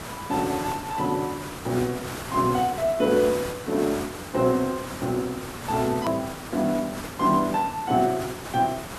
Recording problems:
background hiss; SNR 10 dB
hard cut with a click; at 6 s

